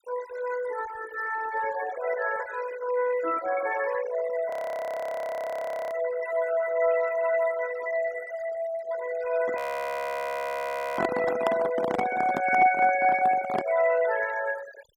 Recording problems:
noise reduction artefacts; signal-to-artefact ratio 13 dB
frozen audio; at 4.5 s for 1.5 s and at 9.5 s for 1.5 s
handling noise; from 9.5 to 14 s; peak +3 dB vs average level

